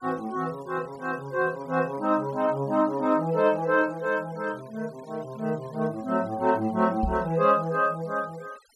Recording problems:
noise reduction artefacts; signal-to-artefact ratio 26 dB
microphone thump; at 7 s; peak 0 dB vs average level

